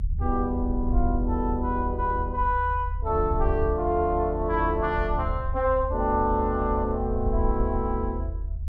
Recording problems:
low-frequency rumble; below 76 Hz, SNR 4 dB

